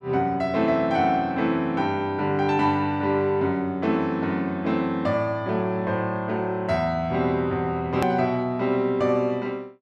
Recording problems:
click at an edit; at 8 s

